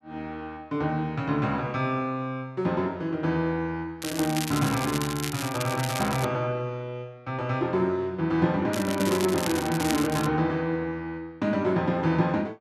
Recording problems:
crackle; from 4 to 6.5 s and from 8.5 to 10 s; loose cable, SNR 8 dB

